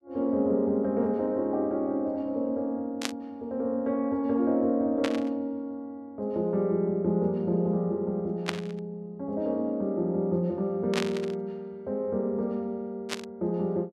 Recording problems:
static burst; 5 times, first at 3 s; peak +3 dB vs average level

